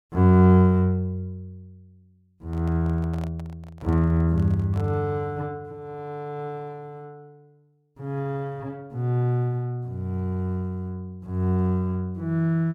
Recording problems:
microphone handling noise; from 2.5 to 5 s; peak -12 dB vs average level

